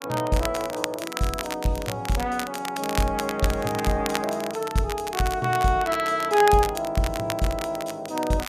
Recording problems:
crackling; vinyl, SNR 9 dB

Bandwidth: 14.5 kHz